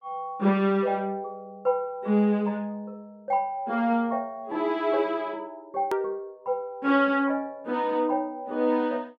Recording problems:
hard cut with a click; at 6 s

